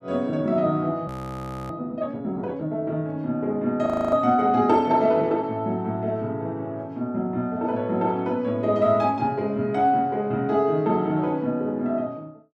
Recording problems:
audio freezing; at 1 s for 0.5 s and at 4 s

